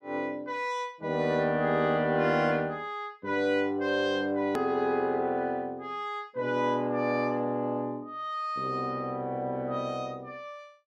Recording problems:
hard cut with a click; at 4.5 s

